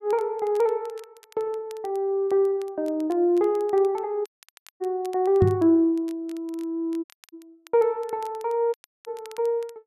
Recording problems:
crackle; vinyl, SNR 28 dB
dropout; at 4.5 s for 0.5 s, at 7 s and at 8.5 s
knock on the microphone; at 5.5 s; peak +6 dB vs average level

